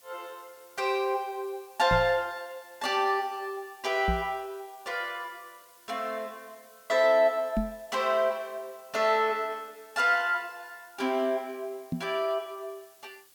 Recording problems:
hiss; slope +1 dB per octave, SNR 26 dB
microphone thump; 4 times, first at 2 s; peak +3 dB vs average level

